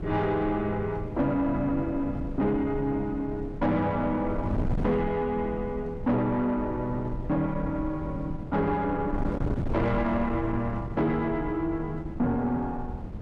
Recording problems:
distortion; soft clipping, signal-to-distortion ratio 10 dB
wind on the microphone; below 240 Hz, SNR 8 dB

